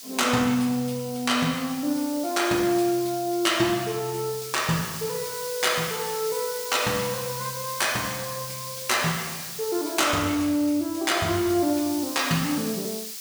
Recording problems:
background hiss; SNR 9 dB

